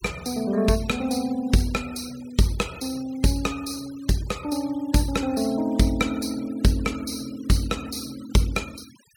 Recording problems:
noise reduction artefacts; signal-to-artefact ratio 19 dB

